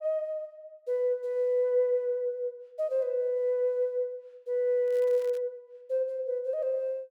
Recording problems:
crackling; at 5 s; loose cable, SNR 27 dB

